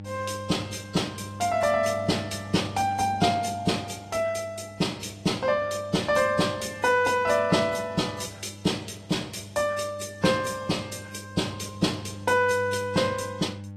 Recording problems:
codec artefacts; AAC, log-spectral distance 3 dB, nothing above 12.7 kHz
hum; 50 Hz, harmonics up to 800 Hz, SNR 16 dB

